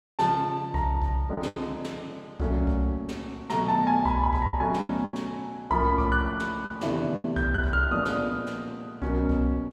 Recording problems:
lost packets; 5% of the sound replaced, filled with the last packet

